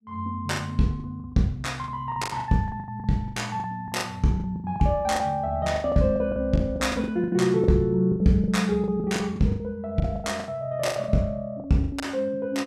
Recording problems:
packet loss; 18% of the sound replaced, filled with the last packet

